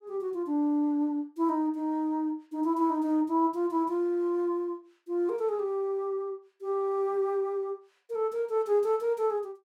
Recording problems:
none

